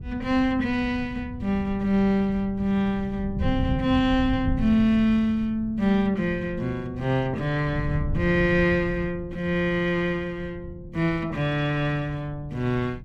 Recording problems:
wind on the microphone; below 150 Hz, SNR 11 dB

